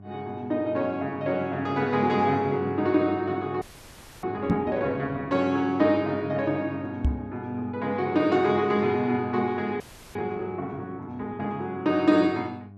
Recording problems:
hum; 50 Hz, harmonics up to 1.1 kHz, SNR 16 dB
frozen audio; at 3.5 s for 0.5 s and at 10 s
microphone bump; at 4.5 s and at 7 s; peak +7 dB vs average level

